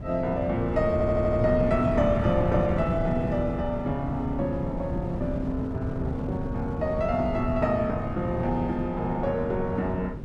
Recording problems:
wind noise; below 220 Hz, SNR 5 dB
stutter; at 1 s

